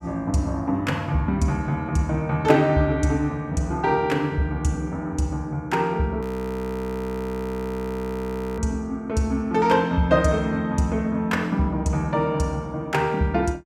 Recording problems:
audio freezing; at 6 s for 2.5 s

